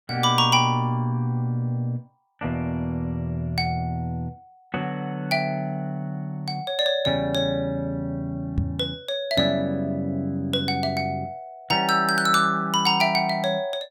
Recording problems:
microphone thump; at 8.5 s; peak +3 dB vs average level

